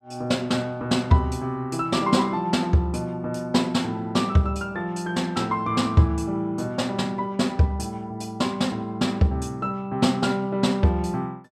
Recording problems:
none

